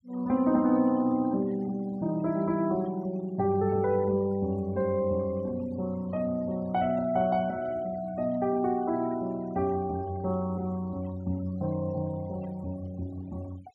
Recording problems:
denoising artefacts; signal-to-artefact ratio 23 dB

